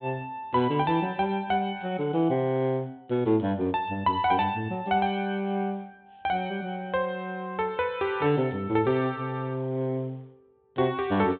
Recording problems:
low-pass filter; nothing above 4 kHz

